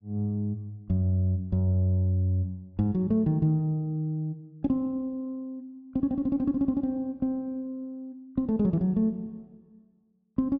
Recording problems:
none

